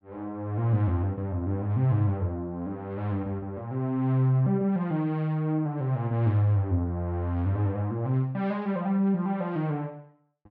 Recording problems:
none

